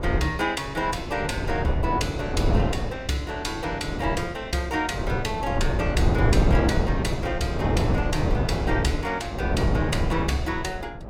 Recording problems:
wind noise; below 350 Hz, SNR -2 dB

